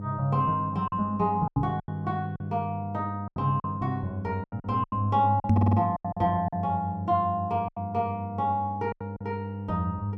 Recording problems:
electrical hum; 50 Hz, harmonics up to 700 Hz, SNR 8 dB
packet loss; 10% of the sound replaced, filled with silence
microphone bump; at 1.5 s and at 5.5 s; peak +9 dB vs average level
stutter; at 5.5 s

